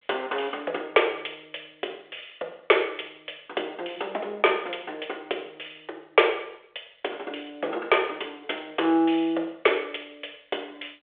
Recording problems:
telephone audio; 340 Hz to 3.5 kHz, G.726

